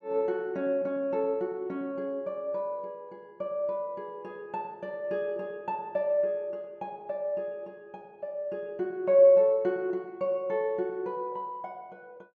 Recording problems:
none

